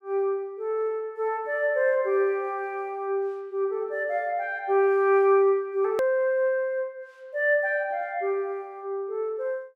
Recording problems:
hard cut with a click; at 6 s

